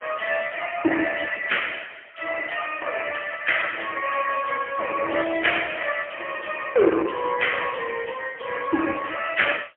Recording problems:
telephone audio; 280 Hz to 3.3 kHz, AMR-NB, then MP3

